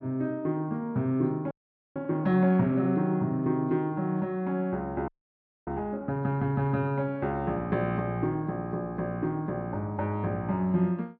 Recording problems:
frozen audio; at 1.5 s and at 5 s for 0.5 s

